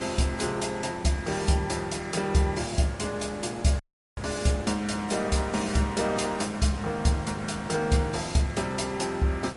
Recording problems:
codec artefacts; MP3, log-spectral distance 4 dB, nothing above 10.7 kHz
background hiss; slope -6 dB per octave, SNR 13 dB
audio cutting out; at 4 s

